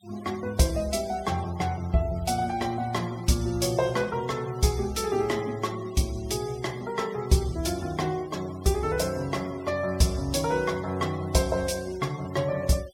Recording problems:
noise reduction artefacts; signal-to-artefact ratio 20 dB

